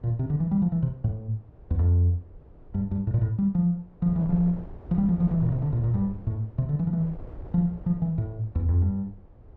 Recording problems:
wind on the microphone; below 160 Hz, SNR 19 dB

